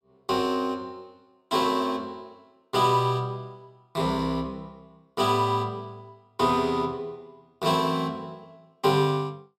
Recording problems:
none

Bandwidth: 16 kHz